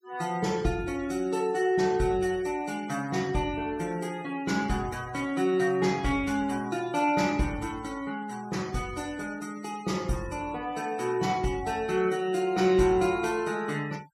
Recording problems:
denoising artefacts; signal-to-artefact ratio 22 dB

